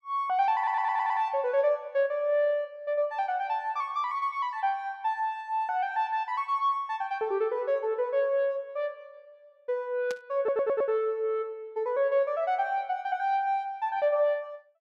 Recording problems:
stutter; at 0.5 s and at 10 s
static burst; at 10 s; peak -9 dB vs average level

